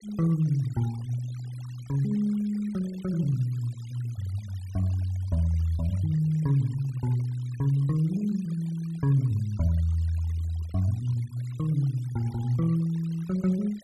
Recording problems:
noise reduction artefacts; signal-to-artefact ratio 25 dB

